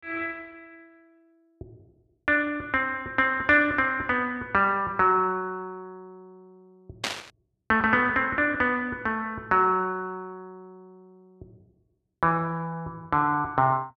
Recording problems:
static burst; at 7 s; peak +1 dB vs average level

